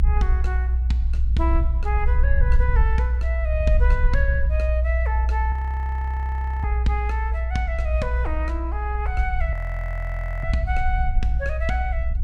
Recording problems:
rumble; below 62 Hz, strongest tone 60 Hz, SNR -6 dB
audio freezing; at 5.5 s for 1 s and at 9.5 s for 1 s

